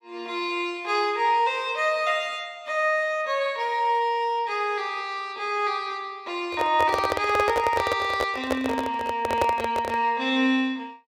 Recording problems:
handling noise; from 6.5 to 10 s; peak +4 dB vs average level

